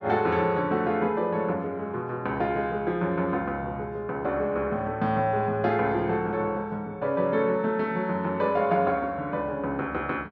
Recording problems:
none

